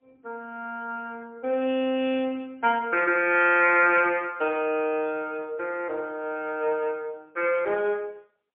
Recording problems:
telephone audio; 240 Hz to 3.3 kHz, AMR-NB, then MP3

